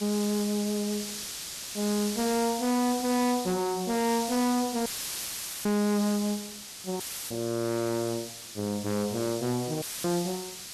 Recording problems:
distorted audio; soft clipping, signal-to-distortion ratio 10 dB
hiss; SNR 7 dB
audio cutting out; at 5 s for 1 s, at 7 s and at 10 s; filled with static

